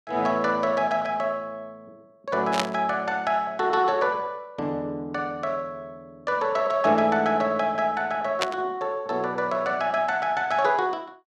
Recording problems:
static burst; at 2.5 s and at 8.5 s; peak +4 dB vs average level

